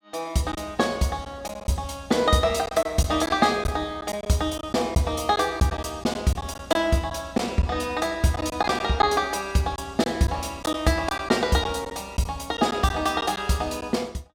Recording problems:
packet loss; 5% of the sound replaced, filled with silence

